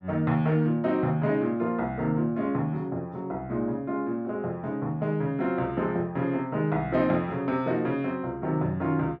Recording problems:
none

